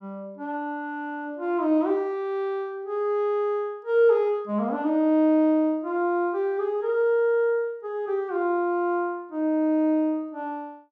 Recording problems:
none

